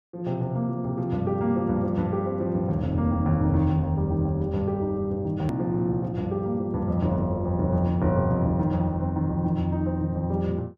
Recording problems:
click at an edit; at 5.5 s

